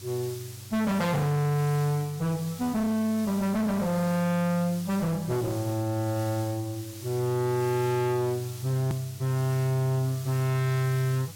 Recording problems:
distortion; hard clipping, uneven, signal-to-distortion ratio 4 dB
electrical hum; 50 Hz, harmonics up to 500 Hz, SNR 19 dB
hiss; slope +1 dB per octave, SNR 16 dB
click at an edit; at 9 s

